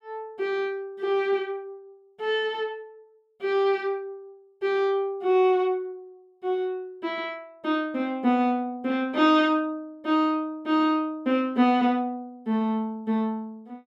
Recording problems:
none

